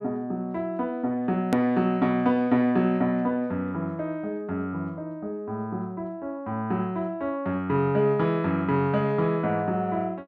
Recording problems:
edit click; at 1.5 s

